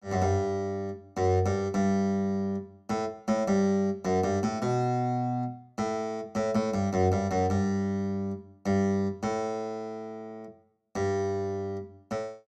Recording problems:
none

